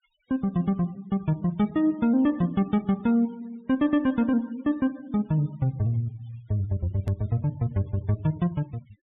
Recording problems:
low-pass filter; nothing above 4 kHz
noise reduction artefacts; signal-to-artefact ratio 27 dB
hard cut with a click; at 7 s

